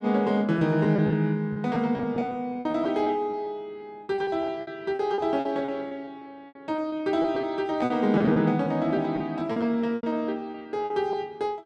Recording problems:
packet loss; 13% of the sound replaced, filled with repeated pitch periods

